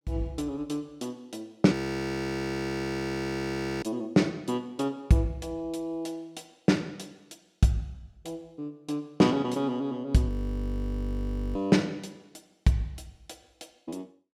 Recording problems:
frozen audio; at 1.5 s for 2 s and at 10 s for 1.5 s

